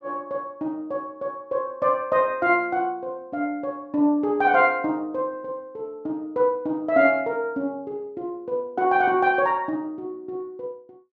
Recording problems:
none

